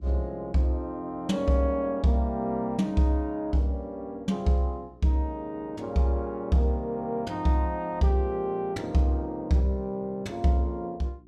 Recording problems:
electrical hum; 60 Hz, harmonics up to 360 Hz, SNR 27 dB

